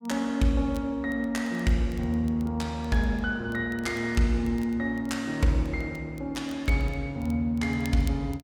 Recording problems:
crackling; vinyl, SNR 26 dB

